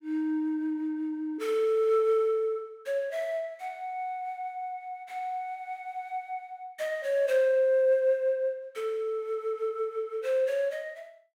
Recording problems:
none

